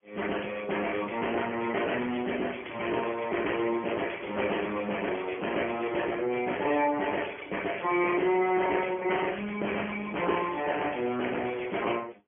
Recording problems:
phone line; 260 Hz to 3.1 kHz, AMR-NB
distorted audio; hard clipping, signal-to-distortion ratio 12 dB

